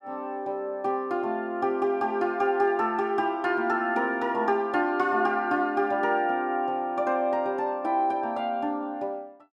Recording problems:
none

